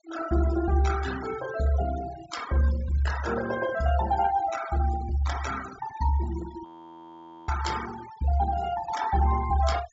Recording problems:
treble cut off; nothing above 7.5 kHz
noise reduction artefacts; signal-to-artefact ratio 14 dB
frozen audio; at 6.5 s for 1 s

